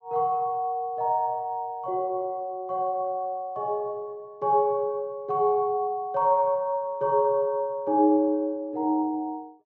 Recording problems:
treble cut off; nothing above 8 kHz

